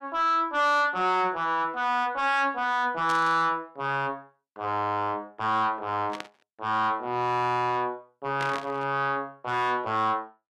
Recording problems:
distorted audio; soft clipping, signal-to-distortion ratio 7 dB
static burst; at 3 s, at 6 s and at 8.5 s; peak -4 dB vs average level

